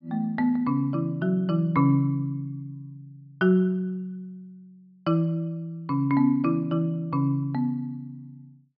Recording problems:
low-pass filter; nothing above 5.5 kHz

